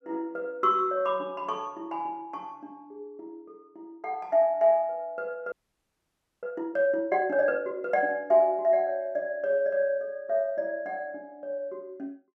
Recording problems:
frozen audio; at 5.5 s for 1 s

